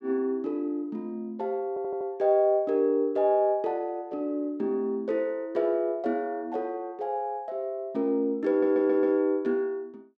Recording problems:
audio stuttering; at 1.5 s and at 8.5 s

